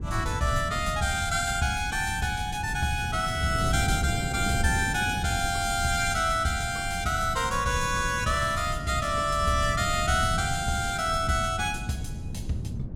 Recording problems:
low-frequency rumble; below 140 Hz, SNR 9 dB
wind on the microphone; below 220 Hz, SNR 11 dB

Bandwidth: 16.5 kHz